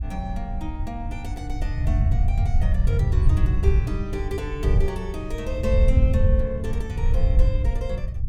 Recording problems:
wind noise; below 86 Hz, SNR -7 dB

